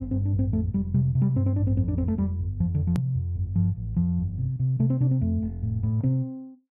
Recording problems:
click at an edit; at 3 s

